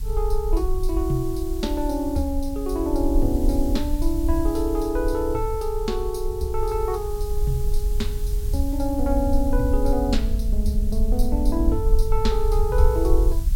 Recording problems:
hiss; slope +1 dB per octave, SNR 18 dB
rumble; below 52 Hz, SNR 1 dB

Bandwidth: 16.5 kHz